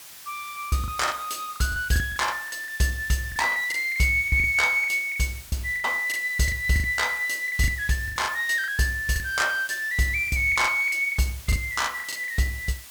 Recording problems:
hiss; slope +2 dB per octave, SNR 17 dB
packet loss; 13% of the sound replaced, filled with the last packet

